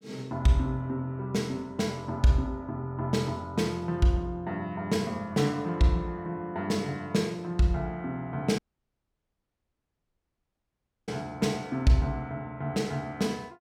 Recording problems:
audio cutting out; at 8.5 s for 2.5 s

